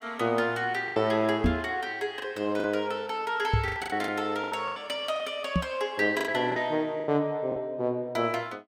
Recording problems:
packet loss; 9% of the sound replaced, filled with the last packet
microphone bump; at 1.5 s, at 3.5 s and at 5.5 s; peak +7 dB vs average level

